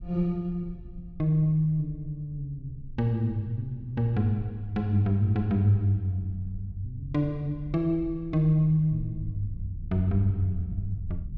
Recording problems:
rumble; below 80 Hz, SNR 16 dB

